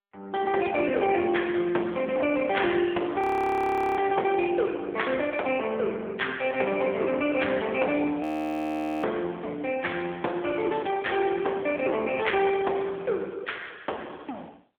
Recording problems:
telephone audio; 300 Hz to 3.5 kHz, AMR-NB
audio freezing; at 3 s for 1 s and at 8 s for 1 s

